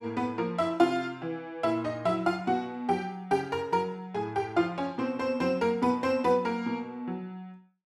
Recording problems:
none

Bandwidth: 14.5 kHz